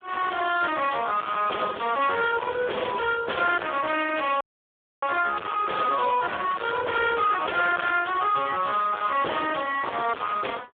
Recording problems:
telephone audio; 280 Hz to 3.4 kHz, Speex
distorted audio; soft clipping, signal-to-distortion ratio 5 dB
audio cutting out; at 4.5 s for 0.5 s

